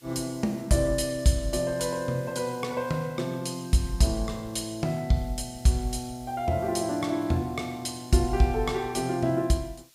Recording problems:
background hiss; SNR 26 dB

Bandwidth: 15.5 kHz